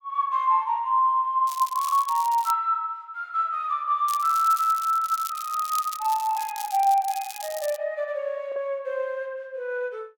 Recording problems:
lost packets; 1.2% of the sound replaced, filled with the last packet
crackling; from 1.5 to 2.5 s and from 4 to 8 s; loose cable, SNR 14 dB

